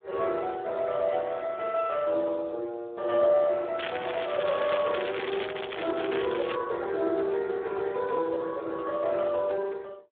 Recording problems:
telephone audio; 280 Hz to 3 kHz, Speex
crackling; from 4 to 6.5 s; loose cable, SNR 8 dB

